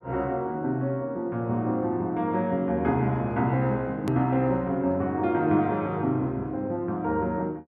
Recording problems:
click at an edit; at 4 s

